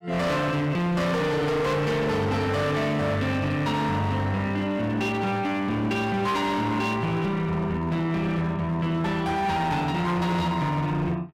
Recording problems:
distorted audio; hard clipping, signal-to-distortion ratio 8 dB

